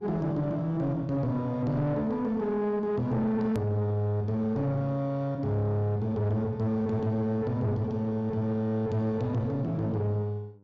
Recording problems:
treble missing; nothing above 7.3 kHz
distorted audio; soft clipping, signal-to-distortion ratio 9 dB
mains hum; 50 Hz, harmonics up to 1 kHz, SNR 28 dB
edit click; at 3.5 s

